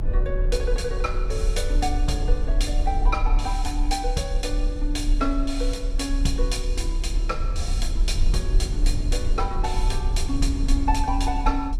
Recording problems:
rumble; below 42 Hz, strongest tone 36 Hz, SNR -2 dB

